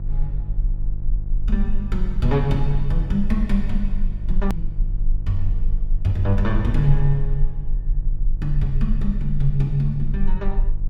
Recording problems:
electrical hum; 50 Hz, harmonics up to 350 Hz, SNR 9 dB
low-frequency rumble; below 34 Hz, strongest tone 20 Hz, SNR 3 dB
edit click; at 4.5 s

